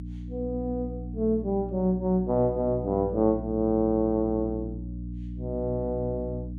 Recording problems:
electrical hum; 60 Hz, harmonics up to 300 Hz, SNR 10 dB

